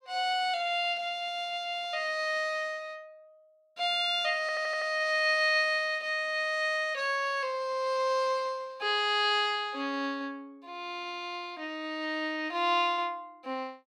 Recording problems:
audio stuttering; at 4.5 s

